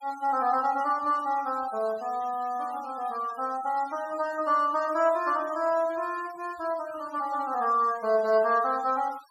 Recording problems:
denoising artefacts; signal-to-artefact ratio 22 dB

